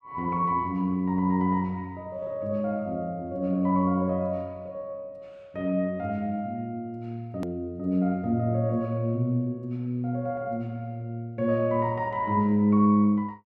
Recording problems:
hard cut with a click; at 7.5 s

